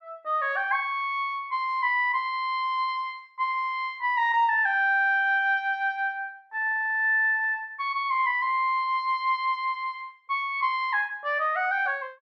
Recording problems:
none

